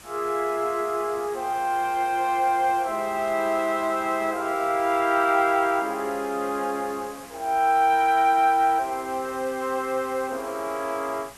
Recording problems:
hiss; slope -2 dB per octave, SNR 20 dB

